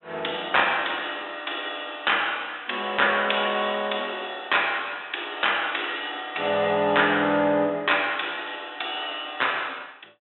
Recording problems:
low-pass filter; nothing above 3.7 kHz

